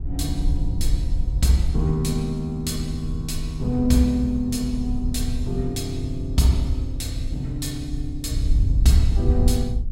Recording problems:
wind on the microphone; below 74 Hz, SNR 3 dB

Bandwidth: 16 kHz